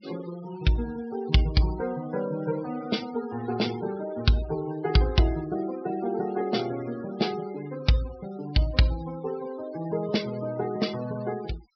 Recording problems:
treble cut off; nothing above 5.5 kHz
denoising artefacts; signal-to-artefact ratio 16 dB

